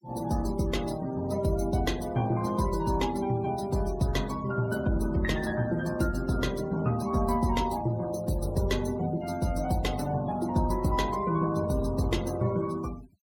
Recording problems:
denoising artefacts; signal-to-artefact ratio 19 dB

